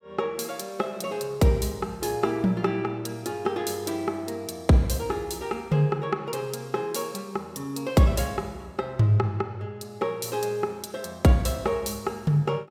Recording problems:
none

